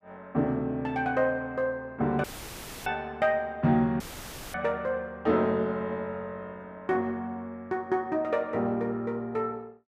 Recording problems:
audio cutting out; at 2 s for 0.5 s and at 4 s for 0.5 s; filled with static

